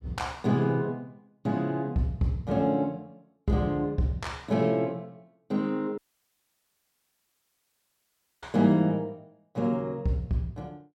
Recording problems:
audio cutting out; at 6 s for 2.5 s

